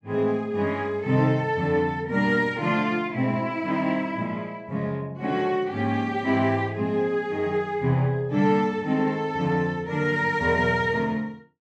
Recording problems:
none

